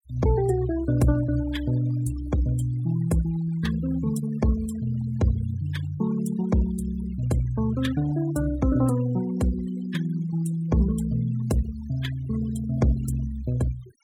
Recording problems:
noise reduction artefacts; signal-to-artefact ratio 19 dB

